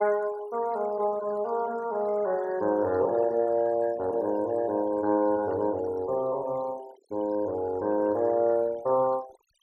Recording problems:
denoising artefacts; signal-to-artefact ratio 21 dB

